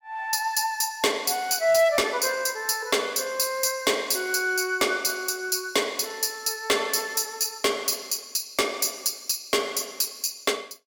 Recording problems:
distortion; hard clipping, signal-to-distortion ratio 11 dB

